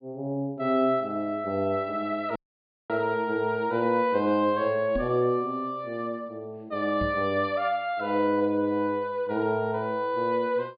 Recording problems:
low-pass filter; nothing above 4.8 kHz
audio cutting out; at 2.5 s for 0.5 s
microphone bump; at 5 s and at 7 s; peak -3 dB vs average level

